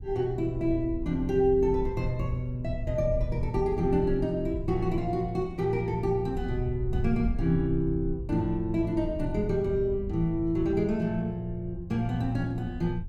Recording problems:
rumble; below 80 Hz, SNR 9 dB

